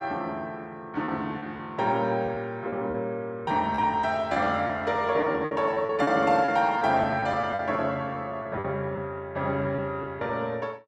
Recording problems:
lost packets; 9% of the sound replaced, filled with repeated pitch periods

